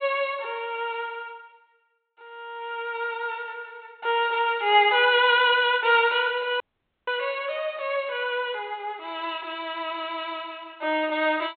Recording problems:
treble missing; nothing above 4 kHz
dropout; at 6.5 s

